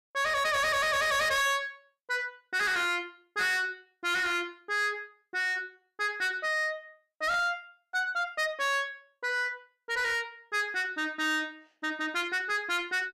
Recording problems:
distorted audio; soft clipping, signal-to-distortion ratio 8 dB

